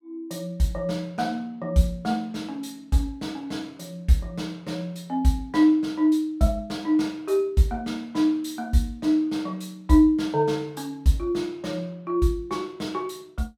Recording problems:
none

